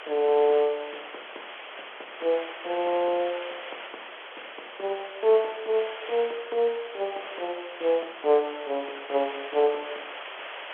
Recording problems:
phone line; 370 Hz to 3.6 kHz, G.711
hiss; SNR 12 dB

